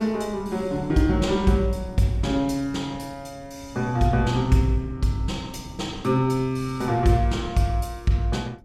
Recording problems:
wind on the microphone; below 220 Hz, SNR 17 dB

